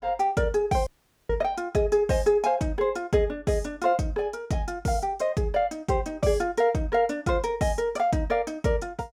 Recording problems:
dropout; at 1 s

